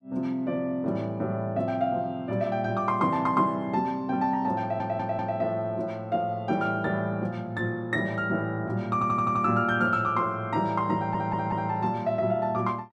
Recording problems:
audio stuttering; at 4.5 s, at 9 s and at 11 s

